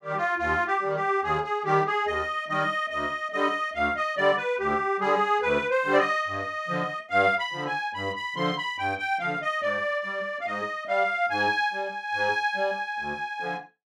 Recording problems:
none

